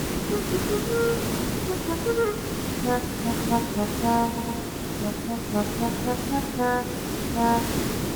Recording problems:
background hiss; SNR 0 dB
audio stuttering; at 4.5 s

